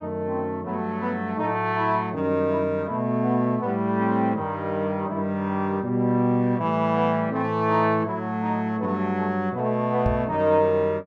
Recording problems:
microphone thump; at 10 s; peak +3 dB vs average level

